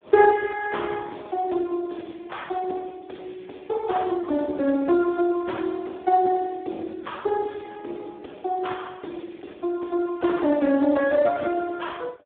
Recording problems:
phone line; 240 Hz to 3.7 kHz, Speex

